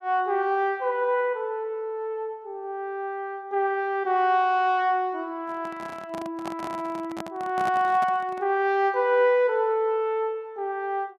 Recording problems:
handling noise; from 5.5 to 8.5 s; peak -5 dB vs average level

